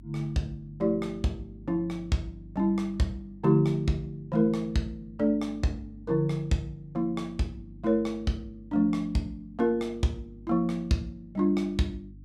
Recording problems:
hum; 50 Hz, harmonics up to 300 Hz, SNR 20 dB

